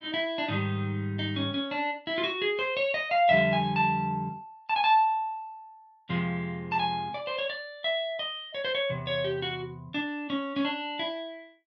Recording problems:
none

